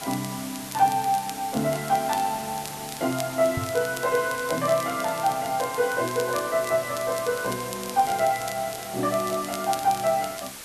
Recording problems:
background hiss; slope -1 dB per octave, SNR 11 dB
crackle; vinyl, SNR 15 dB
microphone bump; at 3.5 s; peak -1 dB vs average level

